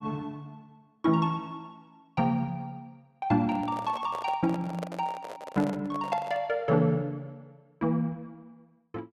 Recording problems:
microphone handling noise; from 3.5 to 6.5 s; peak -3 dB vs average level

